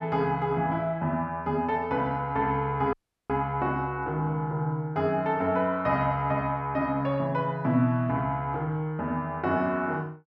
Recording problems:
dropout; at 3 s

